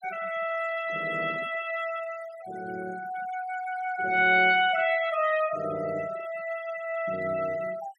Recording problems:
noise reduction artefacts; signal-to-artefact ratio 17 dB

